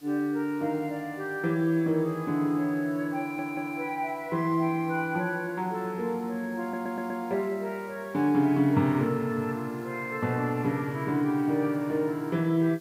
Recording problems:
hiss; slope -1 dB per octave, SNR 27 dB
audio stuttering; at 3 s and at 6.5 s

